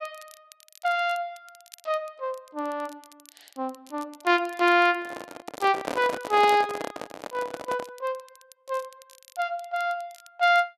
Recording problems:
crackling; vinyl, SNR 25 dB
microphone handling noise; from 5 to 8 s; peak 0 dB vs average level

